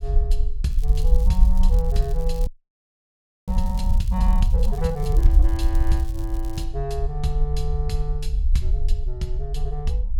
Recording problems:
low-frequency rumble; below 54 Hz, SNR -6 dB
crackling; from 0.5 to 6.5 s; loose cable, SNR 19 dB
audio freezing; at 2.5 s for 1 s

